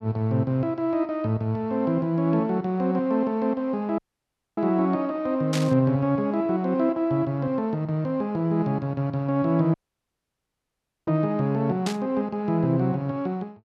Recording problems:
dropout; at 4 s for 0.5 s and at 9.5 s for 1.5 s
static burst; at 5.5 s and at 12 s; peak -2 dB vs average level

